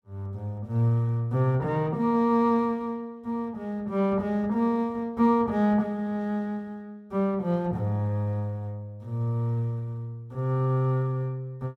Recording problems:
none

